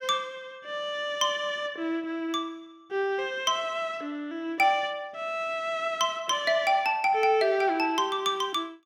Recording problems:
none

